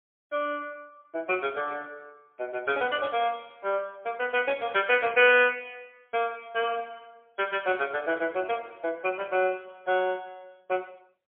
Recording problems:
telephone audio; 260 Hz to 3.4 kHz, AMR-NB, then MP3

